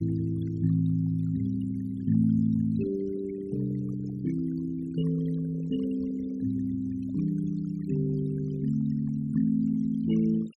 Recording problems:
noise reduction artefacts; signal-to-artefact ratio 18 dB

